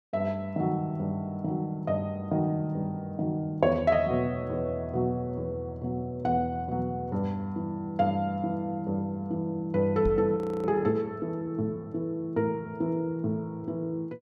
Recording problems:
microphone thump; at 10 s; peak +1 dB vs average level
audio freezing; at 10 s

